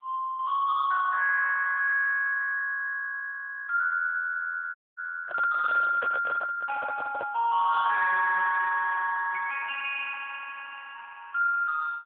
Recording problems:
phone line; 950 Hz to 2.4 kHz, AMR-NB
distortion; soft clipping, signal-to-distortion ratio 11 dB
dropout; at 5 s
handling noise; from 5.5 to 7.5 s; peak -2 dB vs average level

